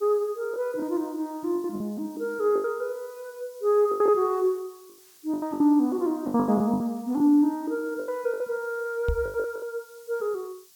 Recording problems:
hiss; SNR 26 dB
packet loss; 10% of the sound replaced, filled with the last packet
microphone thump; at 9 s; peak +2 dB vs average level

